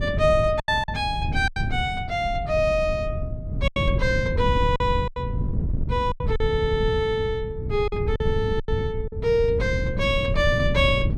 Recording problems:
wind noise; below 140 Hz, SNR 4 dB
packet loss; 7% of the sound replaced, filled with silence
stutter; at 6.5 s

